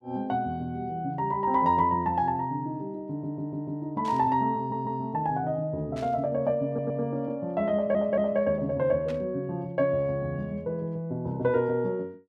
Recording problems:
audio stuttering; 4 times, first at 3 s
static burst; at 4 s, at 6 s and at 9 s; peak -12 dB vs average level

